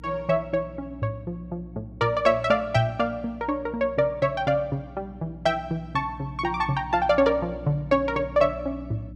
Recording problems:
hum; 60 Hz, harmonics up to 300 Hz, SNR 17 dB

